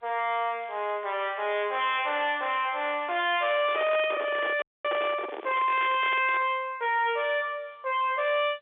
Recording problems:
phone line; 370 Hz to 3.6 kHz, G.711
distortion; soft clipping, signal-to-distortion ratio 5 dB
crackling; from 0.5 to 3.5 s and from 4 to 6 s; loose cable, SNR 28 dB
microphone handling noise; from 3.5 to 6.5 s; peak -3 dB vs average level
frozen audio; at 4.5 s

